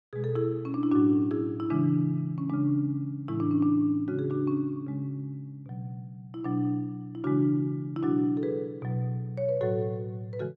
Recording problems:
none

